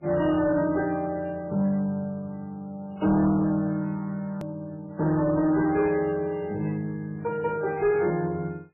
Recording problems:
lossy compression; MP3, then MP3, log-spectral distance 2 dB, nothing above 2.4 kHz
distorted audio; soft clipping, signal-to-distortion ratio 11 dB
edit click; at 4.5 s

